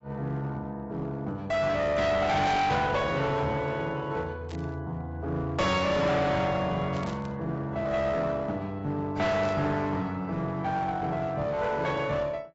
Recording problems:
lossy compression; AAC, log-spectral distance 2 dB, nothing above 7.6 kHz
distorted audio; hard clipping, uneven, signal-to-distortion ratio 6 dB
static burst; at 4.5 s, at 7 s and at 9.5 s; peak -13 dB vs average level

